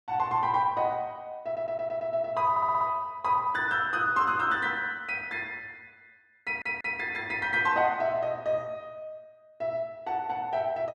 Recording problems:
stutter; at 1.5 s, at 2.5 s and at 6.5 s

